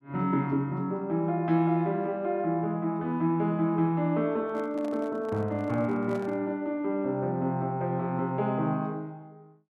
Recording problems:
handling noise; from 4.5 to 6.5 s; peak -11 dB vs average level

